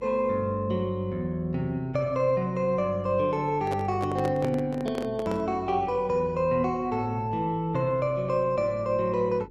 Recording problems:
electrical hum; 50 Hz, harmonics up to 500 Hz, SNR 22 dB
microphone handling noise; from 3.5 to 5.5 s; peak -3 dB vs average level

